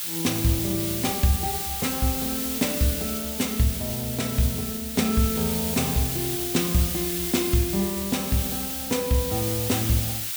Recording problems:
background hiss; slope +4 dB per octave, SNR 2 dB

